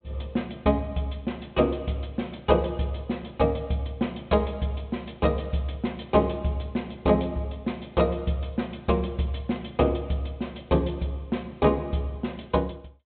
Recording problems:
treble cut off; nothing above 4 kHz

